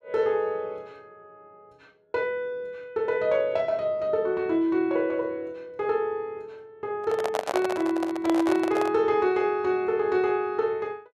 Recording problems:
handling noise; from 7 to 9 s; peak +3 dB vs average level

